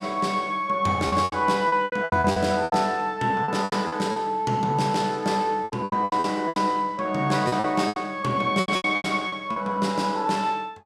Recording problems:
packet loss; 14% of the sound replaced, filled with repeated pitch periods

